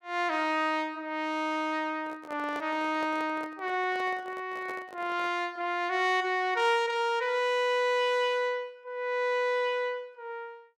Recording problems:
handling noise; from 2 to 5.5 s; peak -9 dB vs average level

